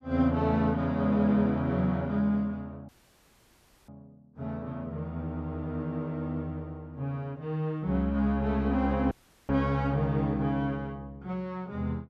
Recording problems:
audio cutting out; at 3 s for 1 s and at 9 s

